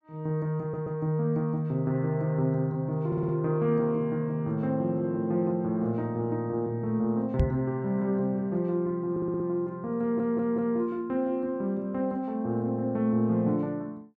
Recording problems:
audio stuttering; 4 times, first at 0.5 s
microphone bump; at 7.5 s; peak +7 dB vs average level

